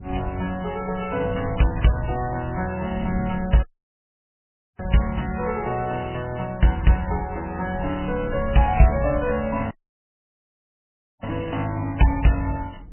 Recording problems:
lossy compression; MP3, log-spectral distance 9 dB, nothing above 2.9 kHz
wind on the microphone; below 140 Hz, SNR 14 dB
dropout; at 3.5 s for 1 s and at 9.5 s for 1.5 s

